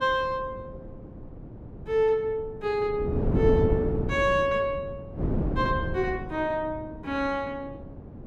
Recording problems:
wind on the microphone; below 290 Hz, SNR 3 dB

